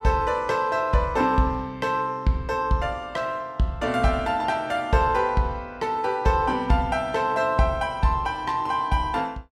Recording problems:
none

